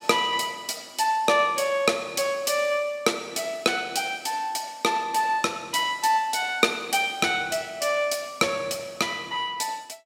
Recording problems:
none

